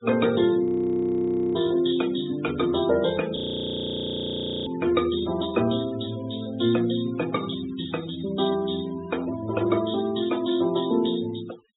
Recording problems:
treble cut off; nothing above 4 kHz
noise reduction artefacts; signal-to-artefact ratio 18 dB
frozen audio; at 0.5 s for 1 s and at 3.5 s for 1.5 s

